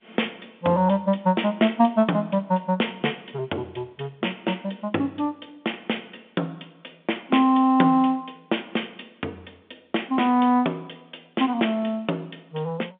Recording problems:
phone line; 190 Hz to 3.6 kHz, G.711

